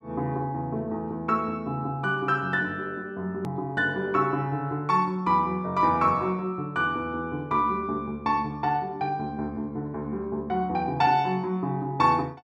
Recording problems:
edit click; at 3.5 s

